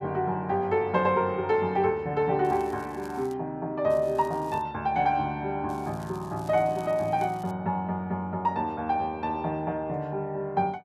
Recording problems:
crackle; at 2.5 s, at 4 s and from 5.5 to 7.5 s; loose cable, SNR 26 dB

